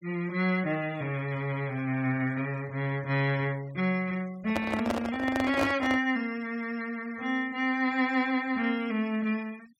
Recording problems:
noise reduction artefacts; signal-to-artefact ratio 23 dB
handling noise; from 4.5 to 6 s; peak +3 dB vs average level

